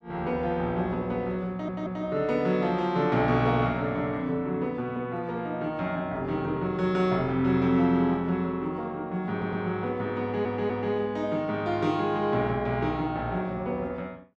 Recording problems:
audio stuttering; at 1.5 s, at 9.5 s and at 10 s

